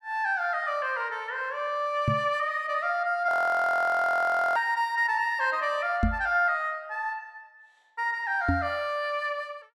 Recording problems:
microphone bump; at 2 s, at 6 s and at 8.5 s; peak +5 dB vs average level
audio freezing; at 3.5 s for 1.5 s

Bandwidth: 13 kHz